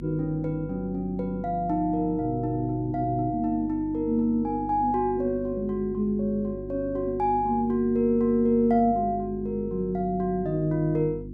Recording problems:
hum; 50 Hz, harmonics up to 350 Hz, SNR 13 dB

